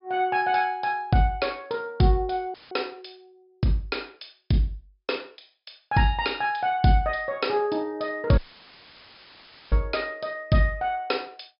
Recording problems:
low-pass filter; nothing above 5.5 kHz
dropout; at 2.5 s and at 8.5 s for 1.5 s; filled with static

